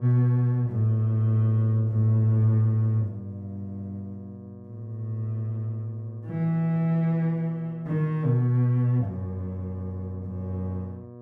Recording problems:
electrical hum; 60 Hz, harmonics up to 1.2 kHz, SNR 21 dB

